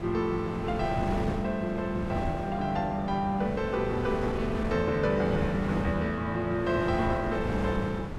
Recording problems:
wind on the microphone; below 490 Hz, SNR 6 dB

